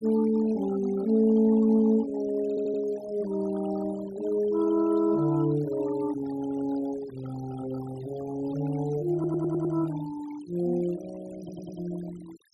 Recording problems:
noise reduction artefacts; signal-to-artefact ratio 19 dB
stutter; at 2.5 s, at 9 s and at 11 s

